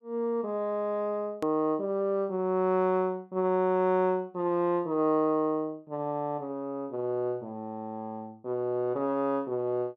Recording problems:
hard cut with a click; at 1.5 s

